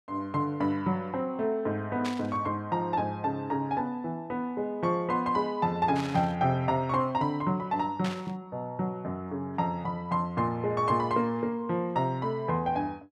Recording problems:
static burst; at 2 s, at 6 s and at 8 s; peak -4 dB vs average level

